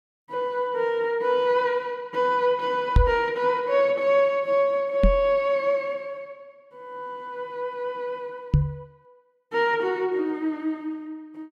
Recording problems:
knock on the microphone; at 3 s, at 5 s and at 8.5 s; peak +9 dB vs average level

